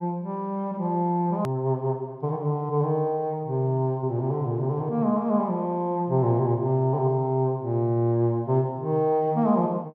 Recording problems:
click at an edit; at 1.5 s

